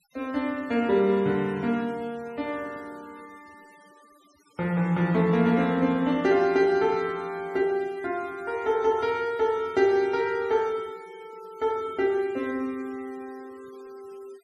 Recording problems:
denoising artefacts; signal-to-artefact ratio 28 dB

